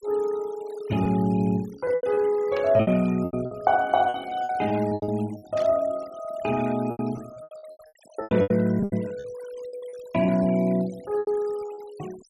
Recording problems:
denoising artefacts; signal-to-artefact ratio 22 dB
packet loss; 14% of the sound replaced, filled with repeated pitch periods
burst of static; at 2.5 s and at 5.5 s; peak -11 dB vs average level

